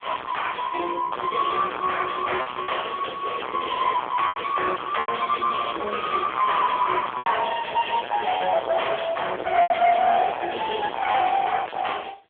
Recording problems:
telephone audio; 300 Hz to 3.4 kHz, AMR-NB
distorted audio; soft clipping, signal-to-distortion ratio 5 dB
lost packets; 5% of the sound replaced, filled with repeated pitch periods

